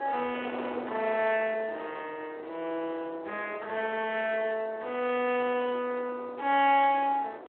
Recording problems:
telephone audio; 300 Hz to 3.5 kHz, Speex
distorted audio; soft clipping, signal-to-distortion ratio 13 dB
wind noise; below 920 Hz, SNR 13 dB

